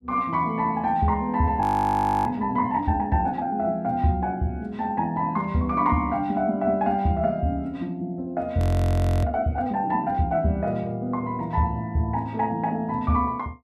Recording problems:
frozen audio; at 1.5 s for 0.5 s and at 8.5 s for 0.5 s

